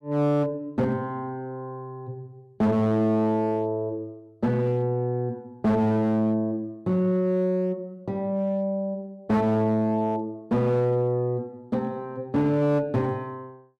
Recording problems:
distortion; hard clipping, uneven, signal-to-distortion ratio 10 dB

